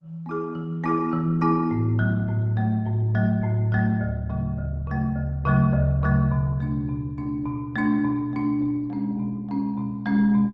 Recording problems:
lossy compression; Opus, log-spectral distance 2 dB

